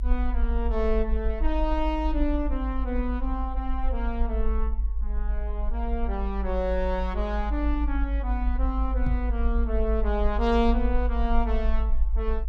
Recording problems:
rumble; below 52 Hz, strongest tone 50 Hz, SNR -1 dB
microphone thump; at 9 s; peak +3 dB vs average level

